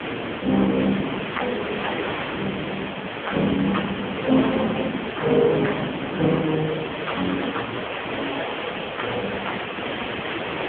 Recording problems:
telephone audio; 170 Hz to 3.4 kHz, AMR-NB
background hiss; SNR 5 dB
wind on the microphone; below 650 Hz, SNR 9 dB

